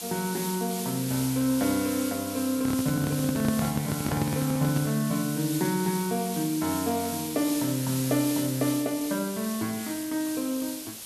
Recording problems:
hiss; SNR 7 dB
microphone handling noise; from 2.5 to 5 s; peak +2 dB vs average level

